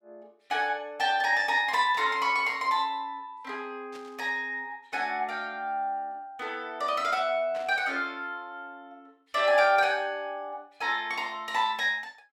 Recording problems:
burst of static; at 2 s, at 4 s and at 7.5 s; peak -14 dB vs average level

